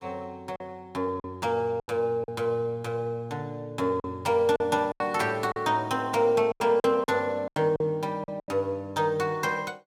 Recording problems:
lost packets; 8% of the sound replaced, filled with silence

